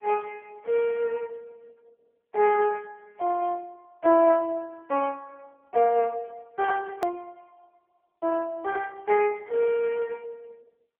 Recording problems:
telephone audio; 300 Hz to 3.1 kHz, AMR-NB
click at an edit; at 7 s

